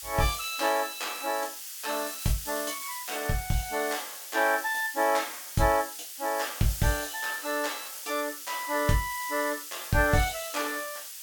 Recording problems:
background hiss; slope +6 dB per octave, SNR 8 dB

